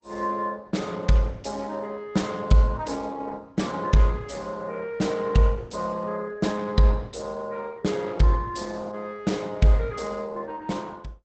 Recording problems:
codec artefacts; Opus, log-spectral distance 3 dB, nothing above 8 kHz

